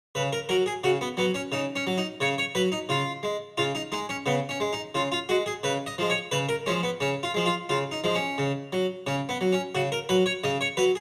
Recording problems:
none

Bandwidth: 14.5 kHz